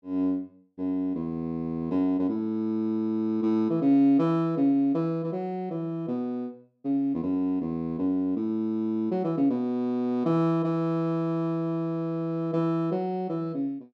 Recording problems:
none

